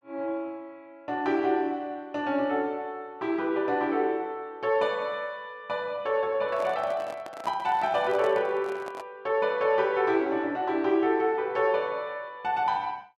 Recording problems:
microphone handling noise; from 6.5 to 9 s; peak -6 dB vs average level

